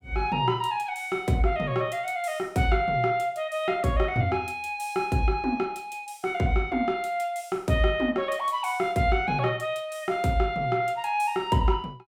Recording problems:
none

